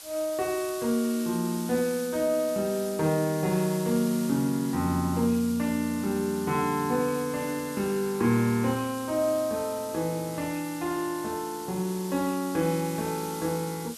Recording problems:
background hiss; SNR 13 dB

